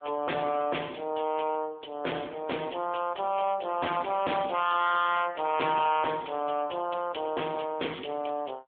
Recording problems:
phone line; 280 Hz to 3.6 kHz, AMR-NB
distorted audio; hard clipping, signal-to-distortion ratio 6 dB

